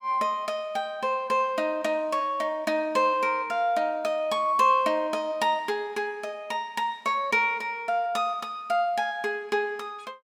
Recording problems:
none

